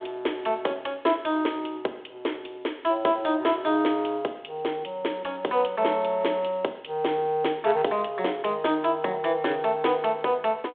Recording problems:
telephone audio; 280 Hz to 3.5 kHz, G.726

